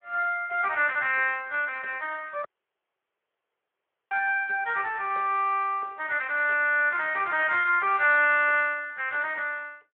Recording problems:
phone line; 340 Hz to 3.4 kHz, Speex
dropout; at 2.5 s for 1.5 s

